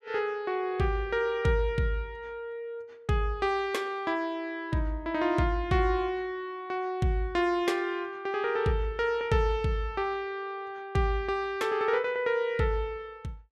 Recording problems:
none

